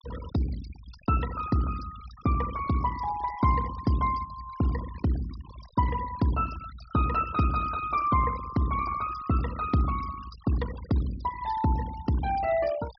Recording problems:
treble cut off; nothing above 5.5 kHz
denoising artefacts; signal-to-artefact ratio 17 dB

